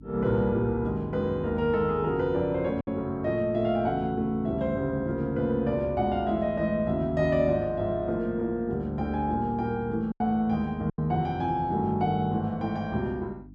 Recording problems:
electrical hum; 50 Hz, harmonics up to 300 Hz, SNR 18 dB
packet loss; 1.6% of the sound replaced, filled with silence

